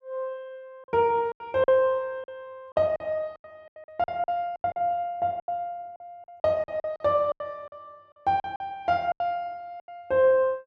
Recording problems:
packet loss; 13% of the sound replaced, filled with silence

